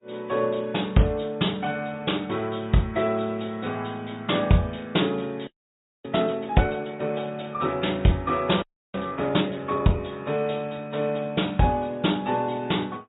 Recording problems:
treble missing; nothing above 3.8 kHz
codec artefacts; Vorbis, then MP3, log-spectral distance 3 dB
frozen audio; at 5.5 s for 0.5 s and at 8.5 s

